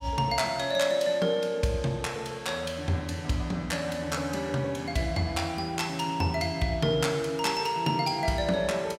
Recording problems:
none

